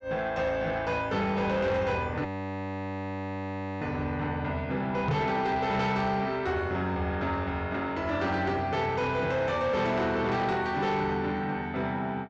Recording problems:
low-pass filter; nothing above 8 kHz
distorted audio; soft clipping, signal-to-distortion ratio 12 dB
audio freezing; at 2.5 s for 1.5 s
microphone bump; at 5 s; peak +4 dB vs average level

